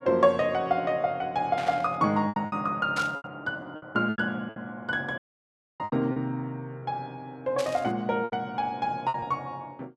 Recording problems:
packet loss; 8% of the sound replaced, filled with repeated pitch periods
burst of static; at 1.5 s, at 3 s and at 7.5 s; peak -3 dB vs average level
dropout; at 5 s for 0.5 s

